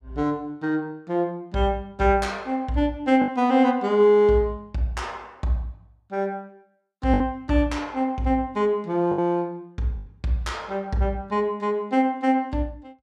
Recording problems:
lost packets; 2% of the sound replaced, filled with the last packet

